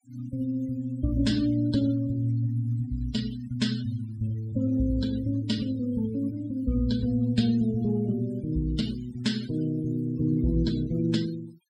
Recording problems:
noise reduction artefacts; signal-to-artefact ratio 17 dB

